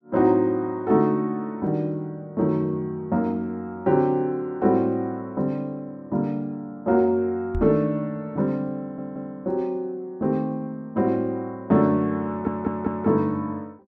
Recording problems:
knock on the microphone; at 7.5 s; peak -2 dB vs average level
stutter; at 9 s and at 12 s

